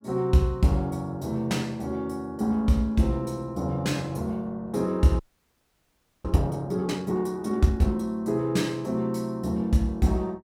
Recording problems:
audio freezing; at 5 s for 1 s

